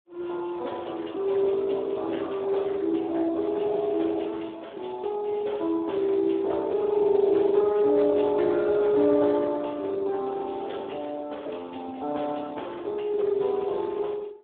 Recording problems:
phone line; 260 Hz to 3.5 kHz, Speex

